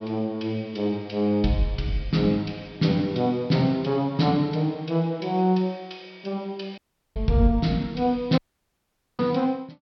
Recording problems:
low-pass filter; nothing above 5.5 kHz
audio cutting out; at 7 s and at 8.5 s for 1 s

